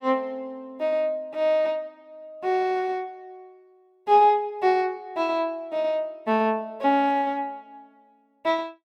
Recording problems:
none

